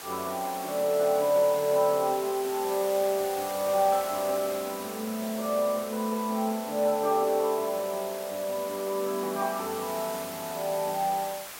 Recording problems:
background hiss; SNR 11 dB

